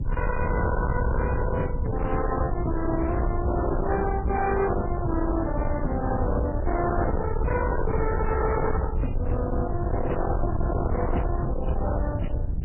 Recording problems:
codec artefacts; AAC, then MP3, log-spectral distance 2 dB, nothing above 2.4 kHz
distorted audio; hard clipping, uneven, signal-to-distortion ratio 6 dB
rumble; below 140 Hz, SNR 2 dB

